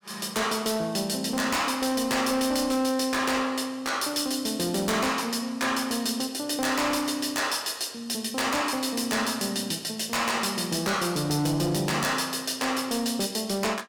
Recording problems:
distorted audio; hard clipping, signal-to-distortion ratio 10 dB

